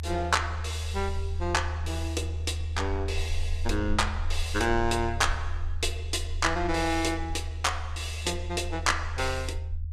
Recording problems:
rumble; below 80 Hz, strongest tone 80 Hz, SNR 4 dB

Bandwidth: 14.5 kHz